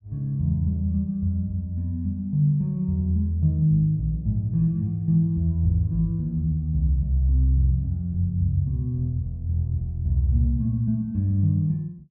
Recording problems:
none

